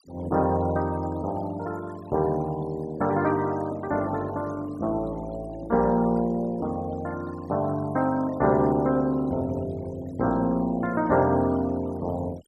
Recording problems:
noise reduction artefacts; signal-to-artefact ratio 21 dB

